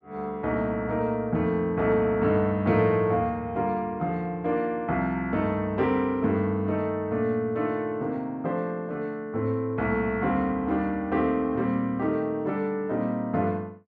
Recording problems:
none

